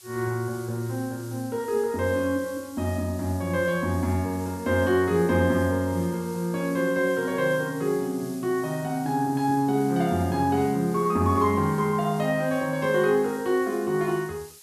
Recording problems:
hiss; slope +3 dB per octave, SNR 20 dB

